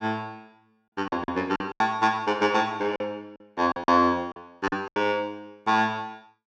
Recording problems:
lost packets; 10% of the sound replaced, filled with silence

